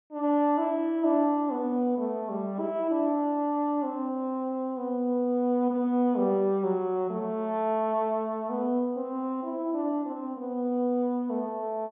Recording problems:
treble cut off; nothing above 3.5 kHz

